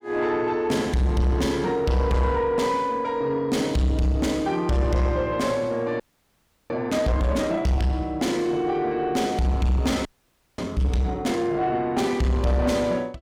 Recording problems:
distortion; soft clipping, signal-to-distortion ratio 10 dB
audio freezing; at 6 s for 0.5 s and at 10 s for 0.5 s

